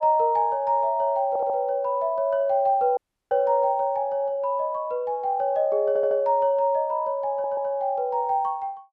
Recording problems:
stutter; at 1.5 s, at 6 s and at 7.5 s
dropout; at 3 s

